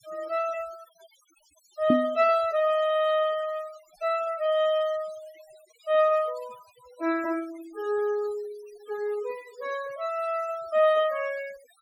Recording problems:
denoising artefacts; signal-to-artefact ratio 20 dB
microphone thump; at 2 s; peak +7 dB vs average level

